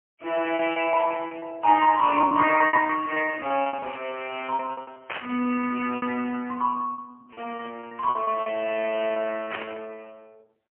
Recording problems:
telephone audio; 280 Hz to 3.1 kHz, AMR-NB, then MP3
lost packets; 13% of the sound replaced, filled with repeated pitch periods
static burst; at 5 s and at 9.5 s; peak -3 dB vs average level

